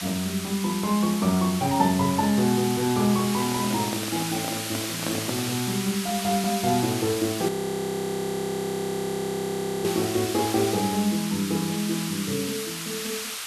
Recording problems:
background hiss; SNR 6 dB
microphone handling noise; from 3.5 to 5.5 s; peak -2 dB vs average level
audio freezing; at 7.5 s for 2.5 s

